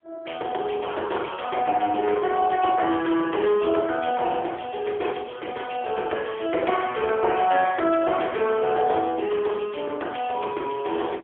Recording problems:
telephone audio; 280 Hz to 3.4 kHz, AMR-NB, then MP3

